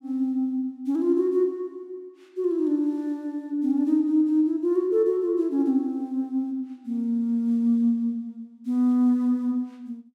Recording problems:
none

